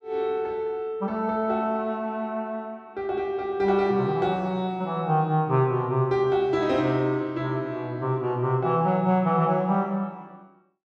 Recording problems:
none

